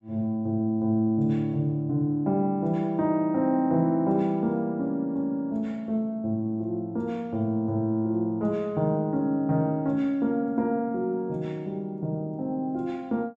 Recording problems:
none

